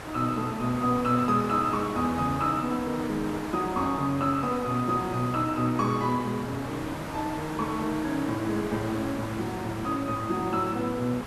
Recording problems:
background hiss; SNR 10 dB

